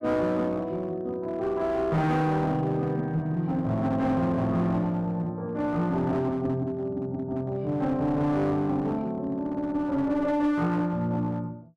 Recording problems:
distortion; hard clipping, uneven, signal-to-distortion ratio 10 dB

